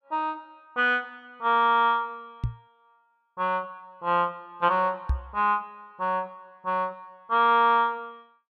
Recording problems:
knock on the microphone; at 2.5 s and at 5 s; peak +2 dB vs average level

